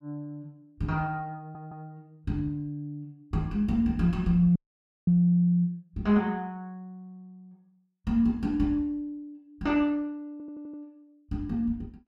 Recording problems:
audio stuttering; at 1.5 s and at 10 s
dropout; at 4.5 s for 0.5 s

